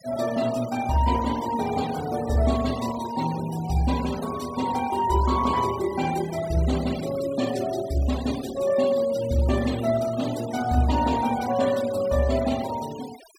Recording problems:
denoising artefacts; signal-to-artefact ratio 15 dB

